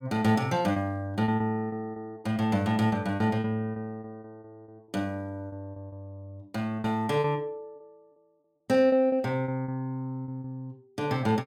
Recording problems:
packet loss; 10% of the sound replaced, filled with repeated pitch periods

